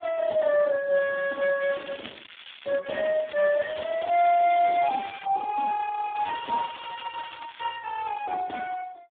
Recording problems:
phone line; 280 Hz to 2.5 kHz, Speex
crackling; from 1.5 to 3 s, from 3 to 5.5 s and from 6 to 8 s; loose cable, SNR 17 dB

